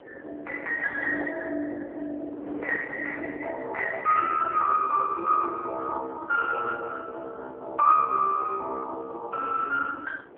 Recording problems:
phone line; 300 Hz to 2.6 kHz, AMR-NB
wind on the microphone; below 640 Hz, SNR 19 dB

